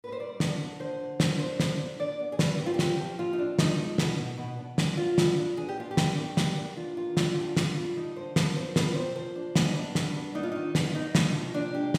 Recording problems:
none

